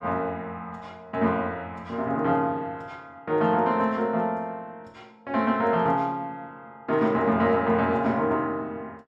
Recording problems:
none

